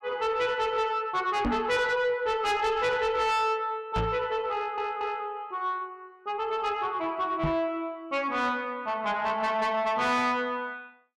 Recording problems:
distortion; soft clipping, signal-to-distortion ratio 10 dB
microphone bump; at 1.5 s, at 4 s and at 7.5 s; peak +3 dB vs average level
audio stuttering; at 4.5 s

